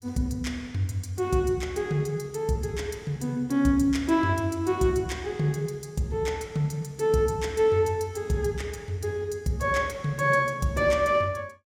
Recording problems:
none

